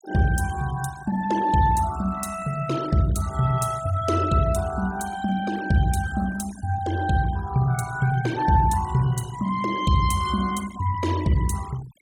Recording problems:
noise reduction artefacts; signal-to-artefact ratio 17 dB

